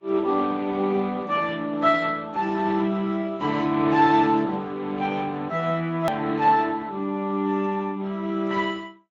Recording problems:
lossy compression; Speex, then AAC, log-spectral distance 3 dB, nothing above 18.9 kHz
click at an edit; at 6 s

